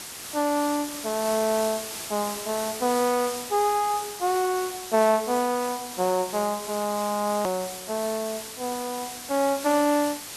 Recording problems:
hiss; slope 0 dB per octave, SNR 8 dB
edit click; at 7.5 s

